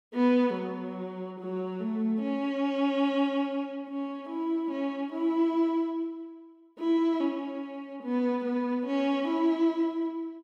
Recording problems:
none

